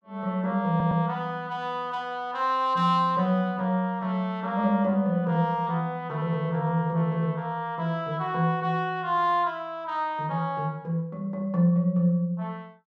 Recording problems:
stutter; at 0.5 s

